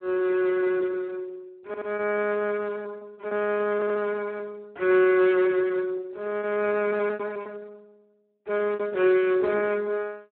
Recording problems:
phone line; 260 Hz to 3.1 kHz, Speex
packet loss; 13% of the sound replaced, filled with repeated pitch periods
audio stuttering; at 1.5 s and at 3.5 s
burst of static; at 9.5 s; peak -16 dB vs average level

